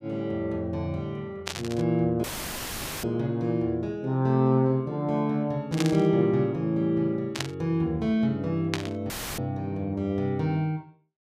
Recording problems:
burst of static; 4 times, first at 1.5 s; peak +2 dB vs average level
dropout; at 2 s for 1 s and at 9 s; filled with static

